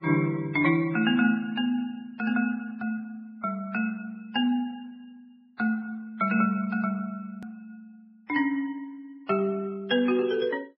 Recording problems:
lossy compression; MP3, then Vorbis, log-spectral distance 2 dB
edit click; at 7.5 s

